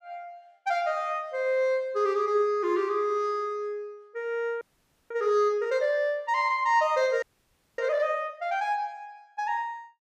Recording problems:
audio freezing; at 4.5 s and at 7 s for 0.5 s

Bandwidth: 15 kHz